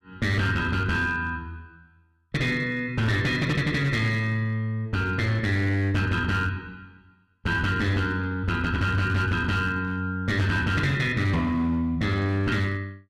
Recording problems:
distortion; hard clipping, signal-to-distortion ratio 11 dB

